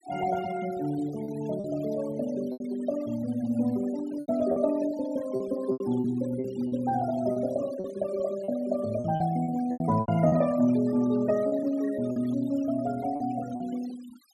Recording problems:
denoising artefacts; signal-to-artefact ratio 18 dB
lost packets; 8% of the sound replaced, filled with repeated pitch periods

